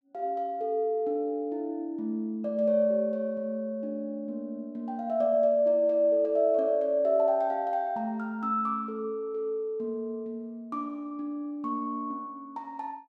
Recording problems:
none

